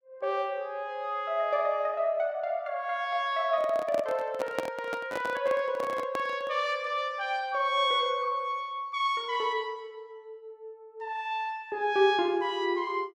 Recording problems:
microphone handling noise; from 3.5 to 6.5 s; peak +1 dB vs average level

